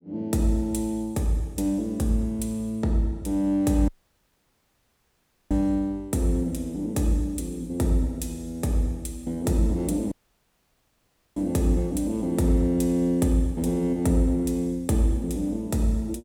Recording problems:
dropout; at 4 s for 1.5 s and at 10 s for 1 s

